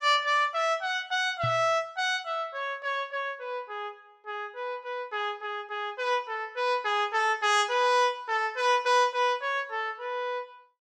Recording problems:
knock on the microphone; at 1.5 s; peak -2 dB vs average level

